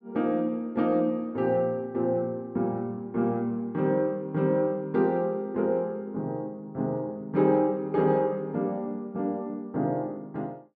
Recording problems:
none

